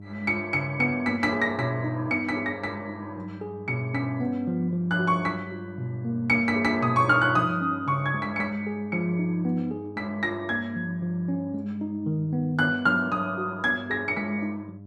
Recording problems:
hum; 50 Hz, harmonics up to 700 Hz, SNR 17 dB

